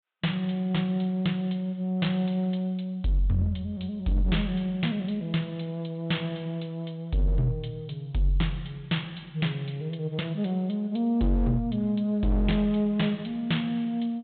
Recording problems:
treble missing; nothing above 4 kHz
distortion; hard clipping, uneven, signal-to-distortion ratio 11 dB

